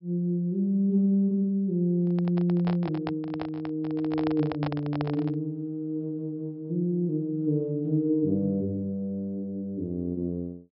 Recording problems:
low-pass filter; nothing above 5.3 kHz
handling noise; from 2 to 5.5 s; peak -3 dB vs average level

